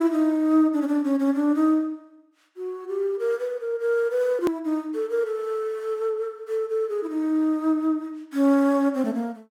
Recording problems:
click at an edit; at 4.5 s

